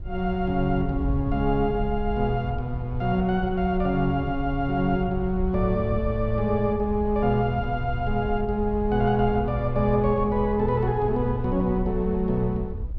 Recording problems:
wind on the microphone; below 80 Hz, SNR 9 dB

